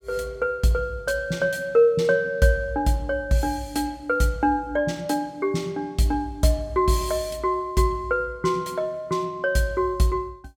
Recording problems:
none

